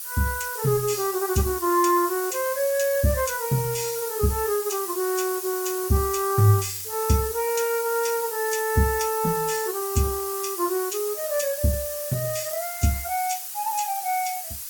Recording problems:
lossy compression; Opus, log-spectral distance 9 dB, nothing above 18.3 kHz
background hiss; slope +3 dB per octave, SNR 6 dB

